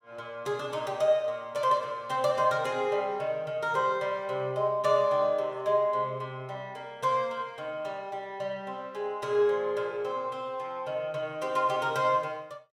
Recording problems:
none

